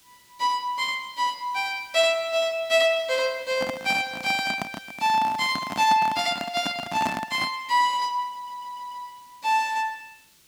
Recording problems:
hiss; SNR 28 dB
microphone handling noise; from 3.5 to 7.5 s; peak -1 dB vs average level
audio stuttering; at 8.5 s

